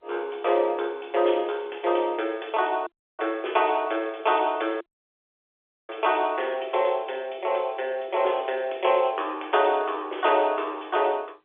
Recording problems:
telephone audio; 320 Hz to 3.5 kHz, G.711
audio cutting out; at 3 s and at 5 s for 1 s

